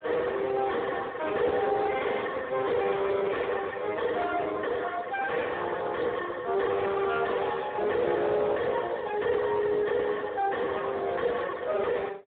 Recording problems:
telephone audio; 280 Hz to 3 kHz, Speex
distorted audio; soft clipping, signal-to-distortion ratio 6 dB

